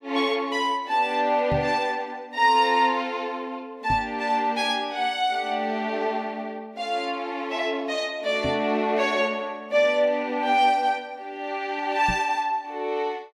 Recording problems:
microphone thump; 4 times, first at 1.5 s; peak -1 dB vs average level

